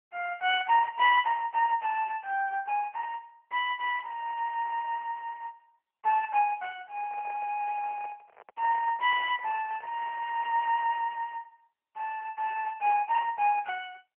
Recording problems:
telephone audio; 470 Hz to 3.1 kHz, AMR-NB
microphone handling noise; from 7 to 10 s; peak -13 dB vs average level

